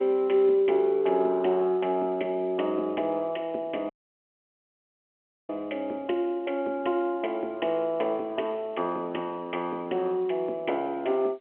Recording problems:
telephone audio; 300 Hz to 3.5 kHz, G.711
dropout; at 4 s for 1.5 s

